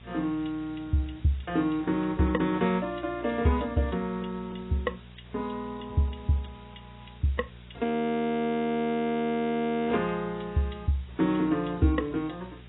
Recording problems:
lossy compression; AAC, log-spectral distance 9 dB, nothing above 3.8 kHz
hum; 60 Hz, harmonics up to 660 Hz, SNR 21 dB
hiss; SNR 27 dB
audio freezing; at 8 s for 2 s

